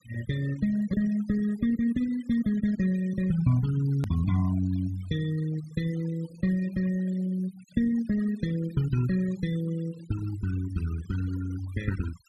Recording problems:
denoising artefacts; signal-to-artefact ratio 18 dB
edit click; at 4 s

